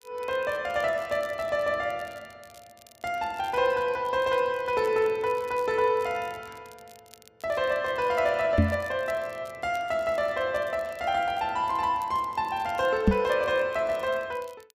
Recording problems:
crackling; vinyl, SNR 27 dB
knock on the microphone; at 8.5 s and at 13 s; peak +9 dB vs average level

